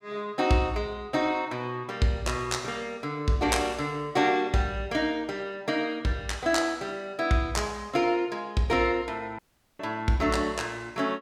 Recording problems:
dropout; at 9.5 s

